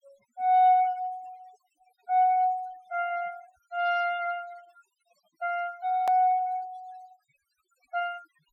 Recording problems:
denoising artefacts; signal-to-artefact ratio 26 dB
click at an edit; at 6 s

